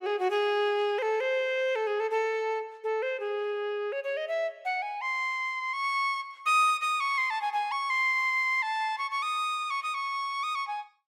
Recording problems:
none

